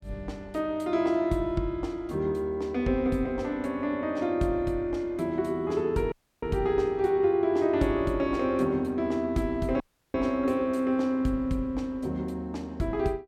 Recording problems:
audio cutting out; at 6 s and at 10 s

